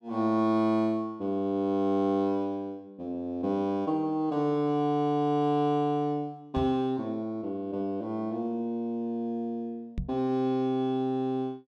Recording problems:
knock on the microphone; at 6.5 s and at 10 s; peak -1 dB vs average level

